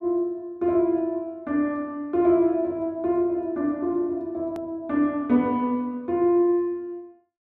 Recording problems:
edit click; at 4.5 s

